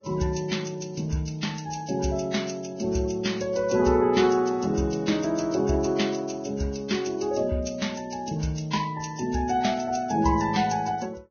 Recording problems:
lossy compression; Vorbis, log-spectral distance 4 dB, nothing above 6.5 kHz

